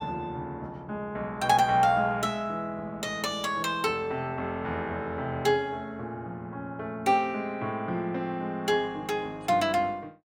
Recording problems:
none

